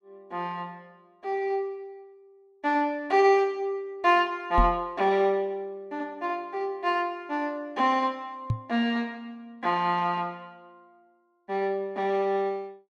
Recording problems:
knock on the microphone; at 4.5 s and at 8.5 s; peak +4 dB vs average level

